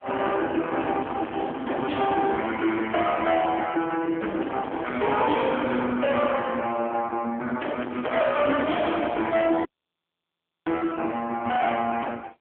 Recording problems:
telephone audio; 220 Hz to 3.3 kHz, AMR-NB
distorted audio; soft clipping, signal-to-distortion ratio 6 dB
dropout; at 9.5 s for 1 s

